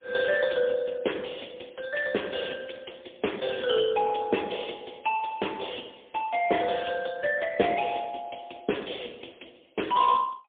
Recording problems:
telephone audio; 260 Hz to 3.4 kHz, AMR-NB, then MP3

